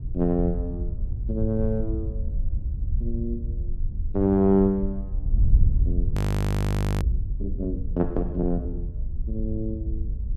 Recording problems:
wind noise; below 90 Hz, SNR 2 dB
frozen audio; at 6 s for 1 s

